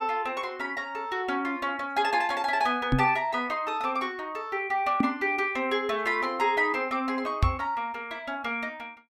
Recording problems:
microphone thump; at 3 s, at 5 s and at 7.5 s; peak +8 dB vs average level

